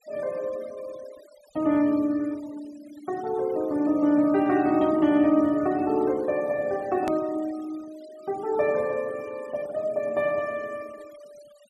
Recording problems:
noise reduction artefacts; signal-to-artefact ratio 24 dB
click at an edit; at 7 s

